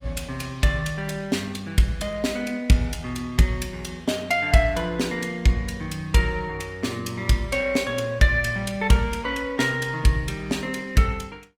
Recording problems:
codec artefacts; Opus, log-spectral distance 3 dB

